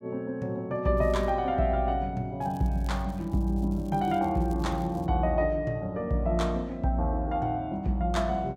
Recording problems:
crackling; at 1 s and from 2.5 to 5 s; loose cable, SNR 29 dB

